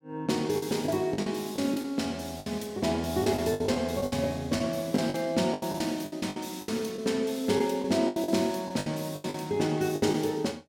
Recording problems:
packet loss; 13% of the sound replaced, filled with the last packet

